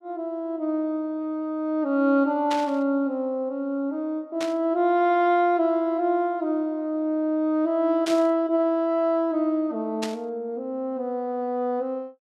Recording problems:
burst of static; 4 times, first at 2.5 s; peak -3 dB vs average level

